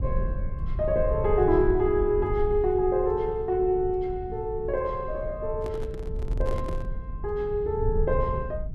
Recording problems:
low-frequency rumble; below 84 Hz, SNR 7 dB
handling noise; from 5.5 to 7 s; peak -7 dB vs average level

